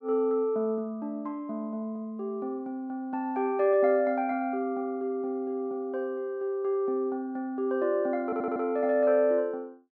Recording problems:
audio stuttering; at 8.5 s

